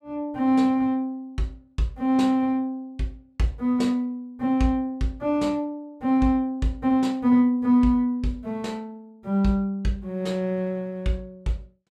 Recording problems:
none

